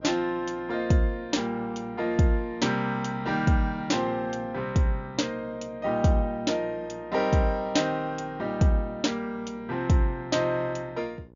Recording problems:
treble cut off; nothing above 7.1 kHz
hum; 60 Hz, harmonics up to 1.1 kHz, SNR 24 dB

